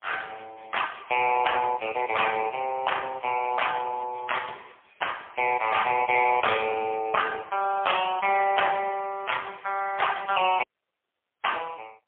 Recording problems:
telephone audio; 340 Hz to 3.4 kHz, AMR-NB, then MP3
audio cutting out; at 11 s for 1 s

